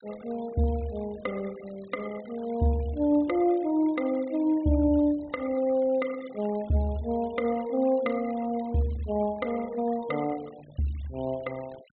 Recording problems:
treble missing; nothing above 4 kHz
noise reduction artefacts; signal-to-artefact ratio 23 dB

